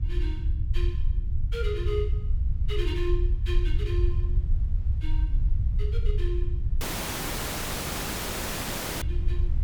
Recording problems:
low-frequency rumble; below 72 Hz, SNR -8 dB
wind noise; below 120 Hz, SNR 13 dB
audio cutting out; at 7 s for 2 s

